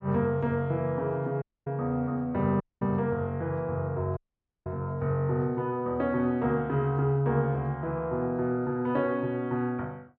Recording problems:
audio cutting out; at 1.5 s, at 2.5 s and at 4 s

